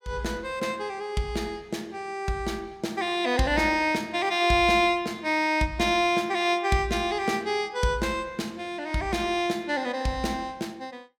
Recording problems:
none

